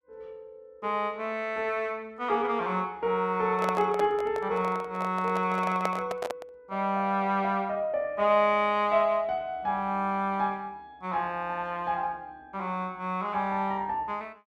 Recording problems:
handling noise; from 3.5 to 6.5 s; peak +1 dB vs average level

